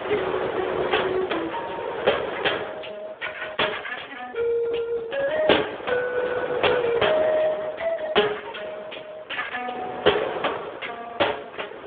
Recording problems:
phone line; 320 Hz to 3.6 kHz, Speex
wind noise; below 1.2 kHz, SNR 6 dB

